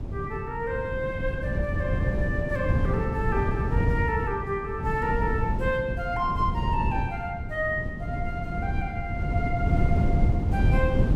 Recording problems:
wind on the microphone; below 170 Hz, SNR -2 dB

